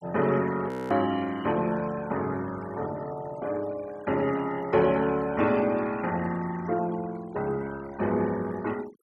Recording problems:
denoising artefacts; signal-to-artefact ratio 19 dB
frozen audio; at 0.5 s

